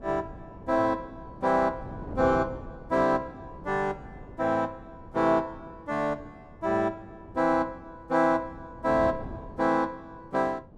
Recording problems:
wind noise; below 350 Hz, SNR 17 dB

